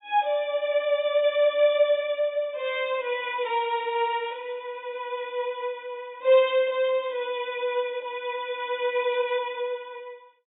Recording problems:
low-pass filter; nothing above 4 kHz

